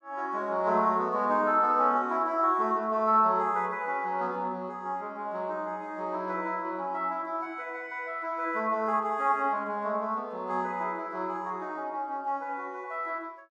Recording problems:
none

